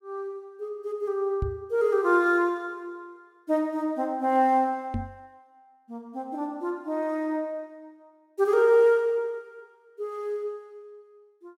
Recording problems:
knock on the microphone; at 1.5 s and at 5 s; peak -1 dB vs average level

